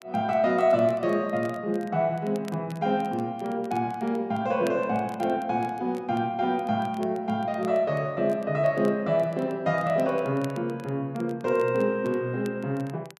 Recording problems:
crackling; vinyl, SNR 27 dB

